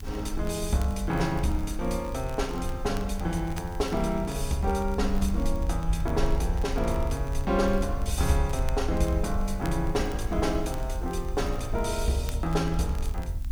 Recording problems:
mains hum; 50 Hz, harmonics up to 300 Hz, SNR 19 dB
hiss; slope 0 dB per octave, SNR 27 dB
low-frequency rumble; below 64 Hz, SNR 5 dB
crackle; vinyl, SNR 22 dB

